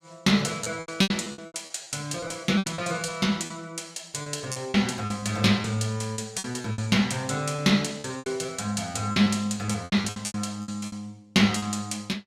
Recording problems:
lost packets; 15% of the sound replaced, filled with repeated pitch periods

